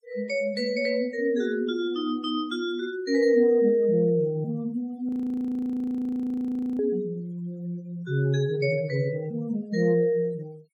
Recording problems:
denoising artefacts; signal-to-artefact ratio 26 dB
frozen audio; at 5 s for 1.5 s

